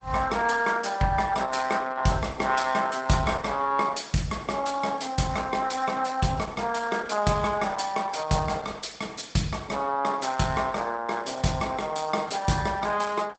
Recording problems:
lossy compression; Opus, log-spectral distance 5 dB, nothing above 8 kHz

